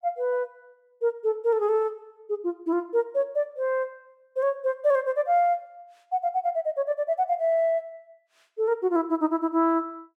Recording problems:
none

